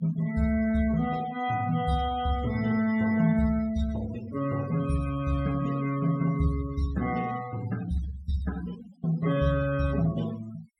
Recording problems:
denoising artefacts; signal-to-artefact ratio 17 dB

